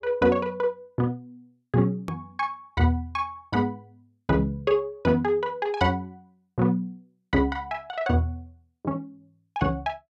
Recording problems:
hard cut with a click; at 2 s

